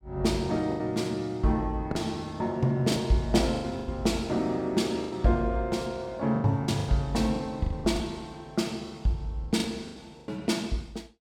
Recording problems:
lost packets; 9% of the sound replaced, filled with the last packet

